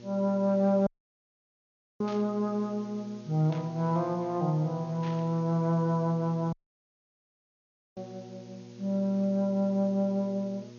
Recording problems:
lossy compression; MP2, log-spectral distance 2 dB, nothing above 6 kHz
electrical hum; 60 Hz, harmonics up to 960 Hz, SNR 20 dB
hiss; slope +2 dB per octave, SNR 29 dB
audio cutting out; at 1 s for 1 s and at 6.5 s for 1.5 s
burst of static; at 2 s, at 3.5 s and at 5 s; peak -13 dB vs average level

